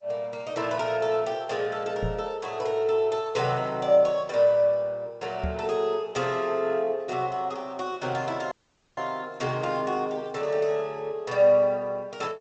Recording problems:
lossy compression; Opus, then G.722, log-spectral distance 3 dB
knock on the microphone; at 2 s and at 5.5 s; peak -1 dB vs average level
audio cutting out; at 8.5 s

